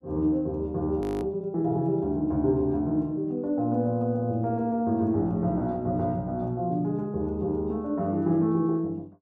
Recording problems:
frozen audio; at 1 s

